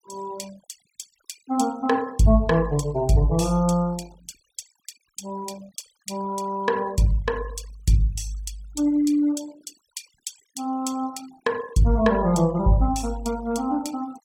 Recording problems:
denoising artefacts; signal-to-artefact ratio 22 dB

